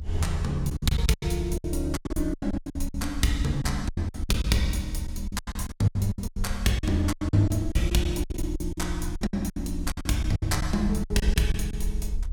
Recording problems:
hum; 50 Hz, harmonics up to 900 Hz, SNR 26 dB
rumble; below 74 Hz, SNR 7 dB
lost packets; 19% of the sound replaced, filled with silence

